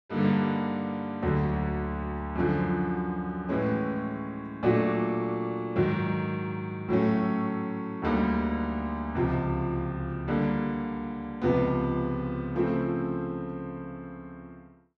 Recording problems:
none

